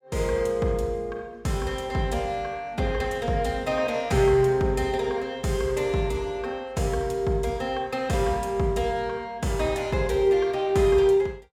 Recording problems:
none

